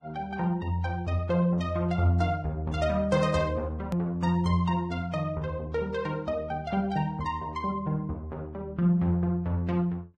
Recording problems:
lossy compression; Vorbis, log-spectral distance 2 dB, nothing above 14.6 kHz
hard cut with a click; at 4 s

